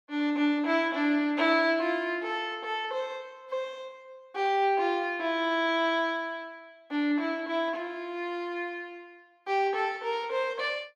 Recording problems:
none

